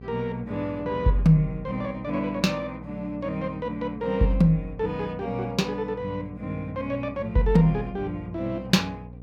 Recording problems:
hum; 60 Hz, harmonics up to 720 Hz, SNR 17 dB

